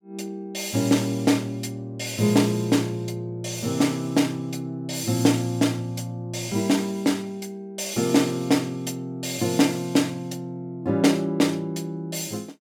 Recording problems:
none

